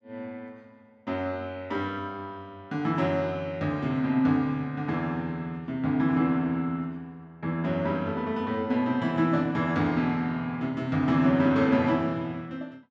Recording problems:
none

